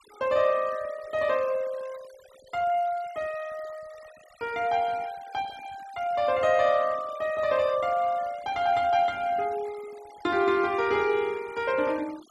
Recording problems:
noise reduction artefacts; signal-to-artefact ratio 22 dB

